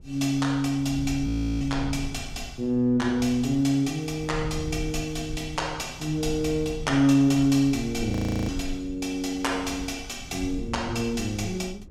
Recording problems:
low-frequency rumble; below 110 Hz, SNR 13 dB
audio freezing; at 1.5 s and at 8 s

